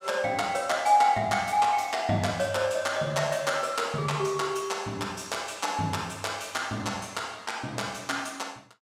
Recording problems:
none

